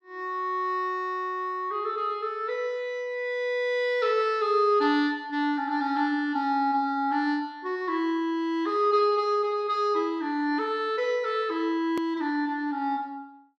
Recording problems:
edit click; at 12 s

